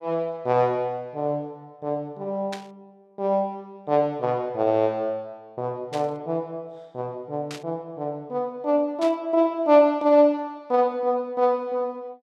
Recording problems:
static burst; 4 times, first at 2.5 s; peak -7 dB vs average level

